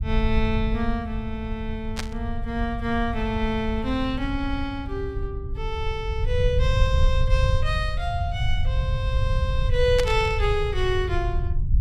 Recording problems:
low-frequency rumble; below 90 Hz, SNR 0 dB
static burst; at 2 s and at 10 s; peak +3 dB vs average level

